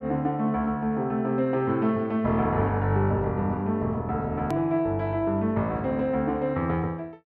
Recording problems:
click at an edit; at 4.5 s

